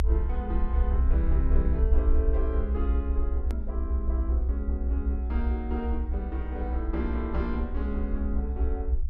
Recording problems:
rumble; below 64 Hz, SNR -7 dB
edit click; at 3.5 s

